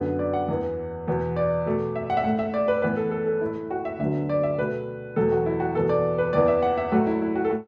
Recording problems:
none

